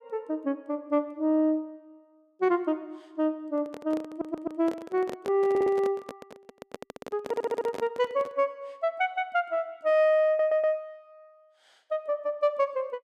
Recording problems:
microphone handling noise; from 3.5 to 8.5 s; peak -4 dB vs average level
stutter; 4 times, first at 4 s

